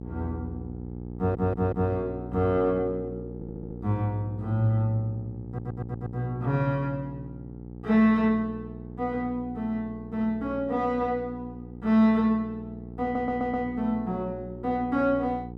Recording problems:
mains hum; 60 Hz, harmonics up to 900 Hz, SNR 12 dB
audio stuttering; 4 times, first at 1 s

